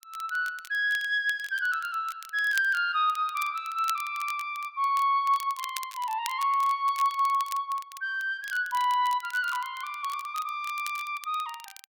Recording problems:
crackle; vinyl, SNR 17 dB

